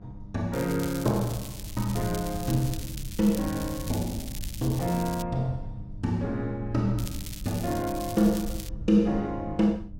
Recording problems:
electrical hum; 50 Hz, harmonics up to 700 Hz, SNR 19 dB
low-frequency rumble; below 100 Hz, SNR 12 dB
crackling; from 0.5 to 5 s and from 7 to 8.5 s; loose cable, SNR 12 dB

